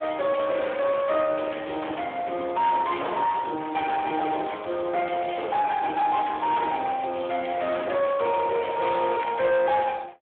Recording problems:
phone line; 300 Hz to 3.4 kHz, Speex
distortion; soft clipping, signal-to-distortion ratio 12 dB

